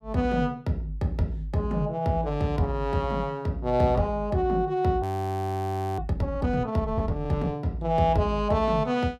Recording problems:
audio freezing; at 5 s for 1 s

